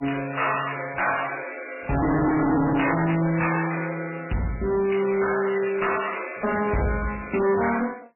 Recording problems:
codec artefacts; MP3, log-spectral distance 8 dB, nothing above 2.7 kHz
distortion; hard clipping, uneven, signal-to-distortion ratio 7 dB

